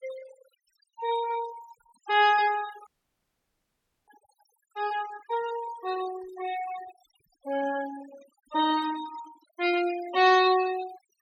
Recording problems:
noise reduction artefacts; signal-to-artefact ratio 16 dB
dropout; at 3 s for 1 s

